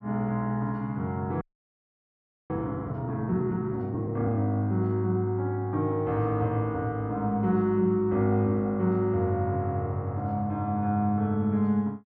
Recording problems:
audio freezing; at 1.5 s for 1 s

